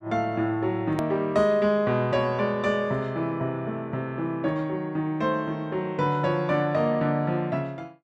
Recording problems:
edit click; at 1 s

